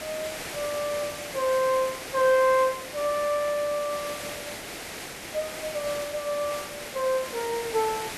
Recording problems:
background hiss; SNR 8 dB

